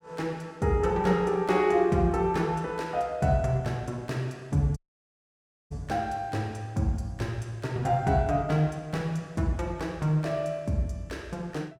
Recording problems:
dropout; at 5 s for 1 s

